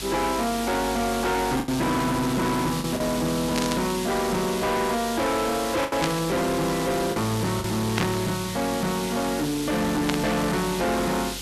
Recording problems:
distorted audio; hard clipping, signal-to-distortion ratio 7 dB
hum; 50 Hz, harmonics up to 450 Hz, SNR 19 dB
background hiss; slope +2 dB per octave, SNR 8 dB
packet loss; 3% of the sound replaced, filled with the last packet
static burst; 4 times, first at 3.5 s; peak +2 dB vs average level

